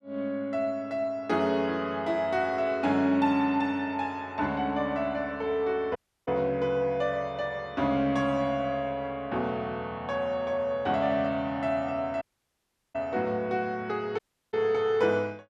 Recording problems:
audio cutting out; at 6 s, at 12 s for 0.5 s and at 14 s

